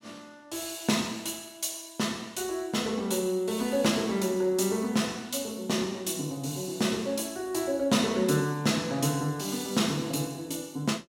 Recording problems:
none

